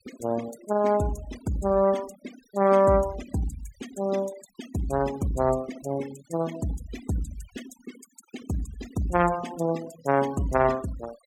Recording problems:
denoising artefacts; signal-to-artefact ratio 18 dB

